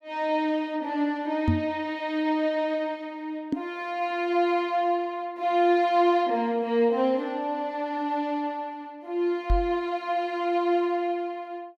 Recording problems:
microphone thump; at 1.5 s, at 3.5 s and at 9.5 s; peak +6 dB vs average level

